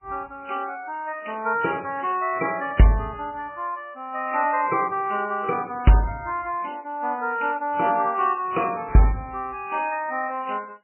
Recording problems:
lossy codec; MP3, log-spectral distance 5 dB, nothing above 2.7 kHz

